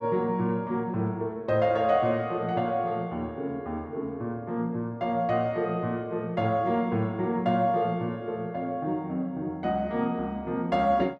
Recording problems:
none

